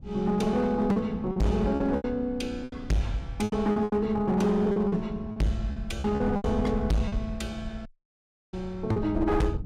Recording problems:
distortion; hard clipping, signal-to-distortion ratio 6 dB
wind noise; below 110 Hz, SNR 12 dB
lost packets; 9% of the sound replaced, filled with repeated pitch periods
dropout; at 8 s for 0.5 s

